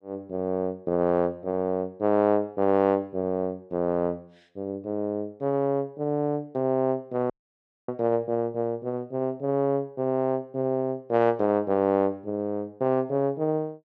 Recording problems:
dropout; at 7.5 s for 0.5 s

